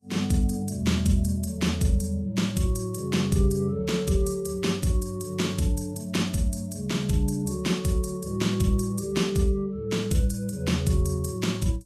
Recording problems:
lossy compression; Vorbis, log-spectral distance 3 dB, nothing above 12.3 kHz

